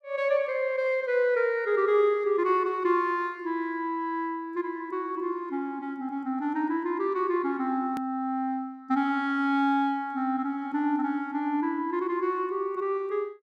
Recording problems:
click at an edit; at 8 s

